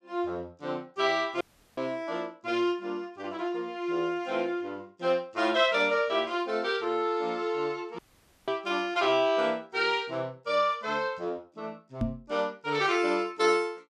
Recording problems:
dropout; at 1.5 s and at 8 s
knock on the microphone; at 12 s; peak +3 dB vs average level

